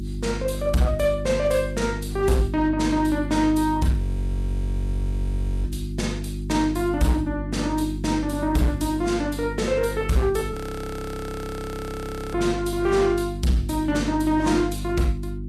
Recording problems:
lossy compression; Vorbis, log-spectral distance 2 dB, nothing above 12.7 kHz
distortion; hard clipping, uneven, signal-to-distortion ratio 12 dB
hum; 50 Hz, harmonics up to 350 Hz, SNR 7 dB
audio freezing; at 4 s for 1.5 s and at 11 s for 2 s

